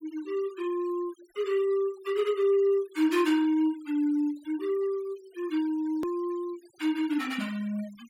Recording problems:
noise reduction artefacts; signal-to-artefact ratio 22 dB
click at an edit; at 6 s

